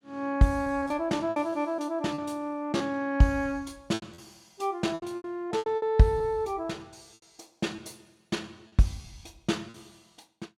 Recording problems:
packet loss; 9% of the sound replaced, filled with repeated pitch periods

